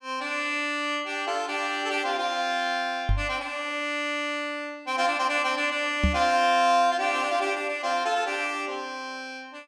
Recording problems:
knock on the microphone; at 3 s and at 6 s; peak +5 dB vs average level

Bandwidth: 15 kHz